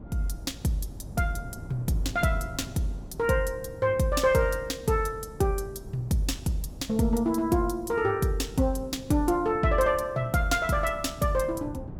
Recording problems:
wind on the microphone; below 250 Hz, SNR 16 dB

